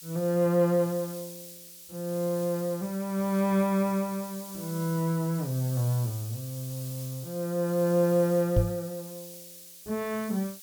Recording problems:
hiss; SNR 14 dB
microphone bump; at 8.5 s; peak +7 dB vs average level

